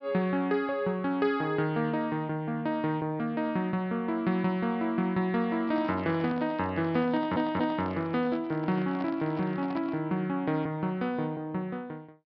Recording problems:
treble cut off; nothing above 5.5 kHz
handling noise; from 5.5 to 10 s; peak -8 dB vs average level
stutter; at 7 s

